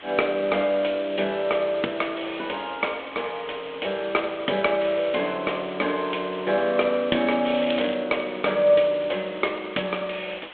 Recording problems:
phone line; 240 Hz to 3.5 kHz, G.726
hiss; SNR 17 dB
crackling; at 7.5 s; loose cable, SNR 12 dB

